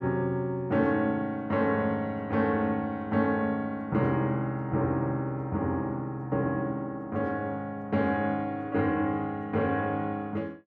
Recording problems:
none

